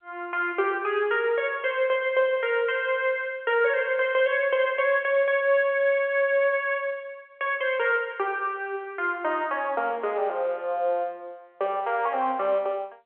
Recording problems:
phone line; 320 Hz to 3.3 kHz, G.711

